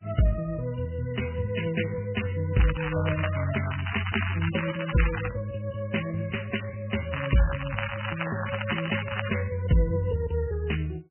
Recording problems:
lossy compression; MP3, log-spectral distance 10 dB, nothing above 3 kHz
crackling; from 2.5 to 5.5 s and from 7 to 9.5 s; loose cable, SNR 5 dB

